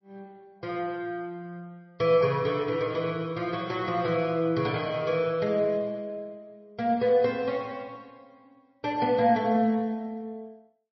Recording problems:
codec artefacts; MP3, log-spectral distance 2 dB, nothing above 5.5 kHz

